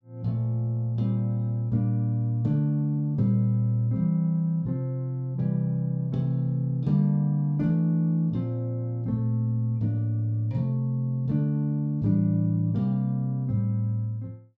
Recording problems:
none

